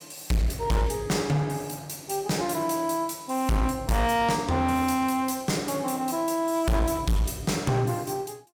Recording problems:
distortion; hard clipping, uneven, signal-to-distortion ratio 7 dB

